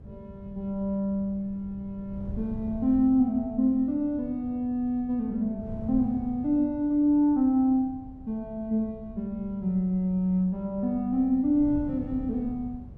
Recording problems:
wind noise; below 150 Hz, SNR 17 dB

